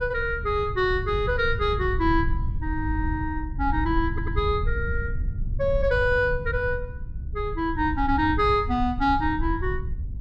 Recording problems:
rumble; below 86 Hz, SNR 6 dB
stutter; at 4 s

